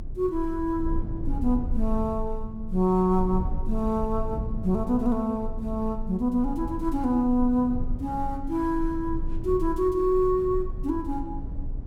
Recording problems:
rumble; below 64 Hz, strongest tone 22 Hz, SNR 8 dB

